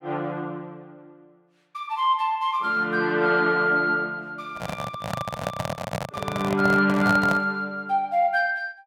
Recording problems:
microphone handling noise; from 4.5 to 7.5 s; peak 0 dB vs average level

